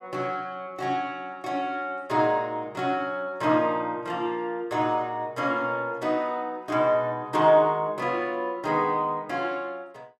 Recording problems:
none

